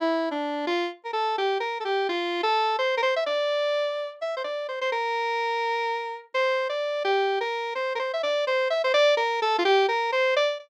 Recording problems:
none

